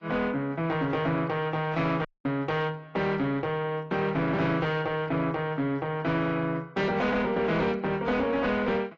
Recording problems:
codec artefacts; AAC, log-spectral distance 2 dB
distorted audio; soft clipping, signal-to-distortion ratio 11 dB
audio cutting out; at 2 s

